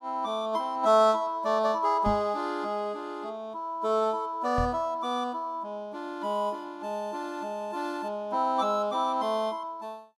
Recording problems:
knock on the microphone; at 2 s and at 4.5 s; peak +1 dB vs average level

